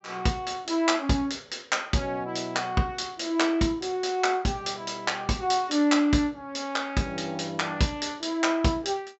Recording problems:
treble cut off; nothing above 7.7 kHz

